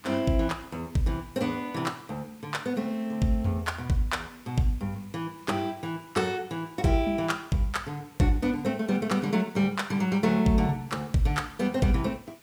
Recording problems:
hiss; SNR 26 dB

